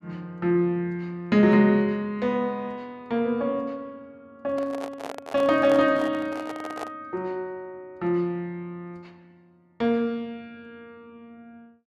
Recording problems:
microphone handling noise; from 4.5 to 7 s; peak -4 dB vs average level

